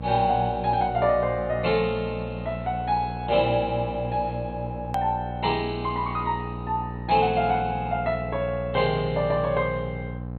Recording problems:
codec artefacts; MP2, log-spectral distance 2 dB, nothing above 3.8 kHz
hum; 60 Hz, harmonics up to 1.1 kHz, SNR 9 dB
edit click; at 5 s

